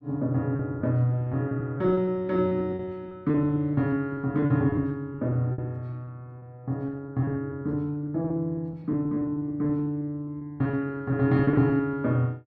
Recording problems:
lost packets; 14% of the sound replaced, filled with repeated pitch periods

